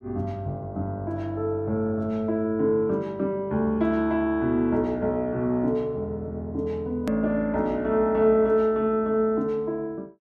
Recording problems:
edit click; at 7 s

